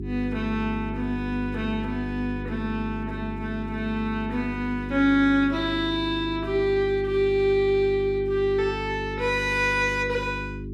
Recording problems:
electrical hum; 50 Hz, harmonics up to 400 Hz, SNR 9 dB

